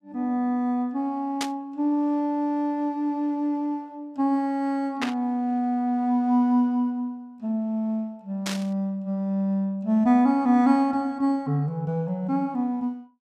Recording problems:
static burst; at 1.5 s, at 5 s and at 8.5 s; peak 0 dB vs average level

